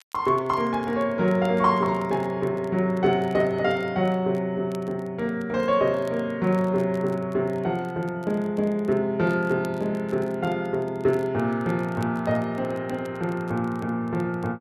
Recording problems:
crackling; vinyl, SNR 29 dB

